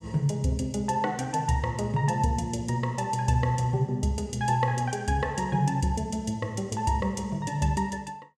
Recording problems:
none

